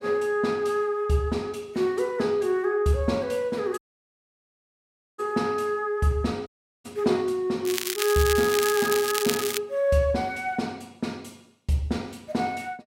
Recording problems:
audio cutting out; at 4 s for 1.5 s and at 6.5 s
crackle; from 7.5 to 9.5 s; loose cable, SNR 3 dB

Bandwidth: 16 kHz